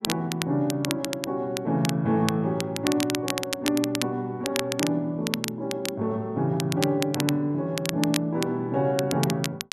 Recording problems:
crackle; vinyl, SNR 6 dB

